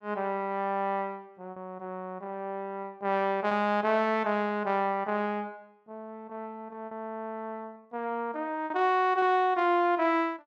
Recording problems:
lost packets; 3% of the sound replaced, filled with repeated pitch periods

